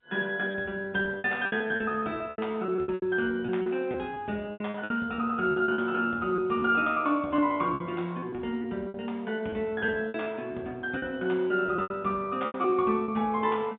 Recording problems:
phone line; 150 Hz to 3.7 kHz, G.711
lost packets; 14% of the sound replaced, filled with repeated pitch periods

